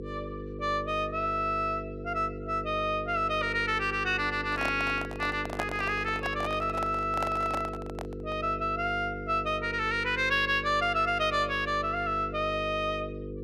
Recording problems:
hum; 50 Hz, harmonics up to 500 Hz, SNR 10 dB
microphone handling noise; from 4.5 to 8.5 s; peak 0 dB vs average level

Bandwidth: 13 kHz